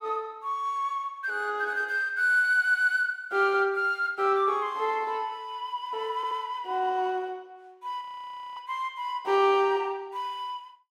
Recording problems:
stutter; at 2.5 s and at 6 s
audio freezing; at 8 s for 0.5 s

